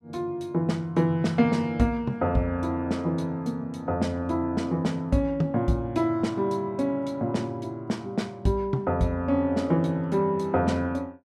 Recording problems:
none

